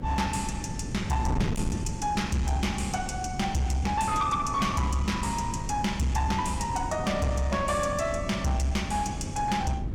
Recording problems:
distortion; soft clipping, signal-to-distortion ratio 10 dB
electrical hum; 50 Hz, harmonics up to 600 Hz, SNR 17 dB
wind on the microphone; below 230 Hz, SNR 7 dB

